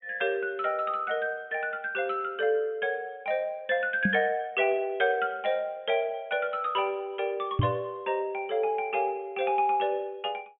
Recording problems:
low-pass filter; nothing above 3.5 kHz
microphone thump; at 4 s and at 7.5 s; peak +7 dB vs average level

